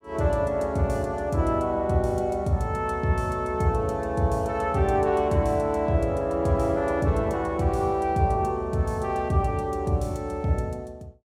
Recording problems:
none

